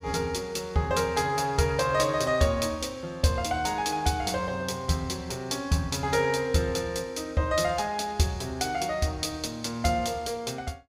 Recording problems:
none

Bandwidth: 15.5 kHz